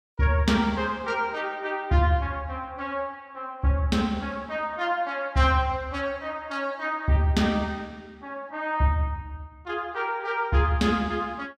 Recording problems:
none

